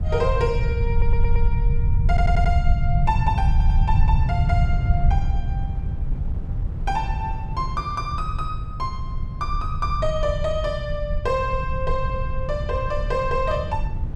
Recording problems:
rumble; below 92 Hz, SNR -2 dB
wind noise; below 220 Hz, SNR 14 dB
audio stuttering; at 1 s, at 2 s and at 3.5 s

